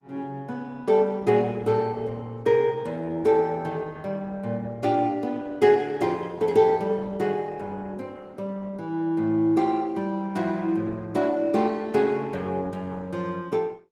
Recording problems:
lossy compression; Opus, log-spectral distance 2 dB

